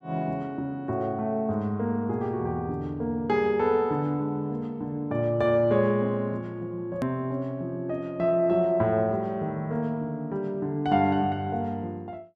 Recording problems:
click at an edit; at 7 s

